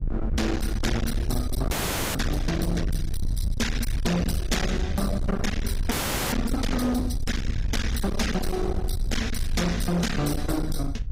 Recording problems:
lossy compression; AAC, log-spectral distance 3 dB, nothing above 15.1 kHz
distortion; hard clipping, uneven, signal-to-distortion ratio 6 dB
low-frequency rumble; below 100 Hz, SNR 2 dB
audio freezing; at 1.5 s and at 6 s

